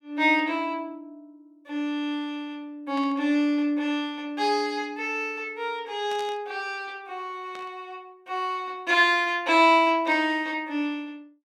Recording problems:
static burst; 4 times, first at 3 s; peak -13 dB vs average level

